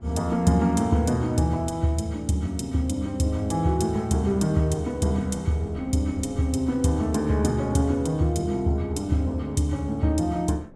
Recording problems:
wind noise; below 380 Hz, SNR 23 dB

